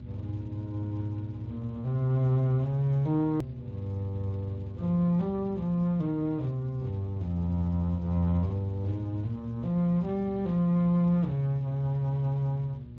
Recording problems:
lossy compression; Speex, log-spectral distance 2 dB, nothing above 18.3 kHz
hum; 60 Hz, harmonics up to 600 Hz, SNR 15 dB
rumble; below 150 Hz, strongest tone 72 Hz, SNR 18 dB
edit click; at 3.5 s

